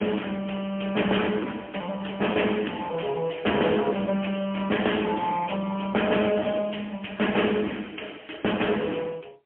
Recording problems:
telephone audio; 190 Hz to 3.3 kHz, AMR-NB, then MP3
distorted audio; soft clipping, signal-to-distortion ratio 13 dB

